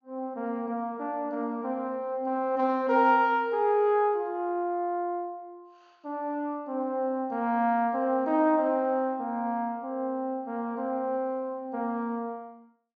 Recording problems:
treble cut off; nothing above 7.2 kHz

